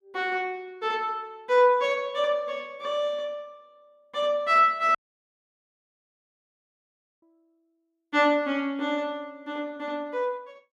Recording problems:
audio cutting out; at 5 s for 2.5 s

